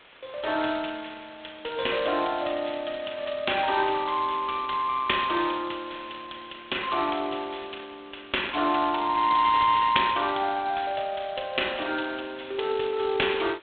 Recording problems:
telephone audio; 240 Hz to 3.9 kHz, G.726
background hiss; SNR 24 dB

